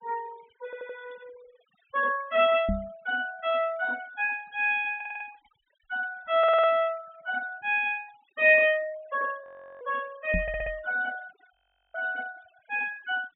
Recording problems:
treble cut off; nothing above 3.7 kHz
noise reduction artefacts; signal-to-artefact ratio 23 dB
audio stuttering; 4 times, first at 0.5 s
microphone bump; at 2.5 s and at 10 s; peak +1 dB vs average level
audio freezing; at 9.5 s and at 12 s

